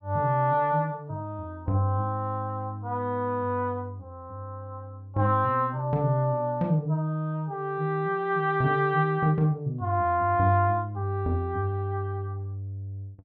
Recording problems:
none

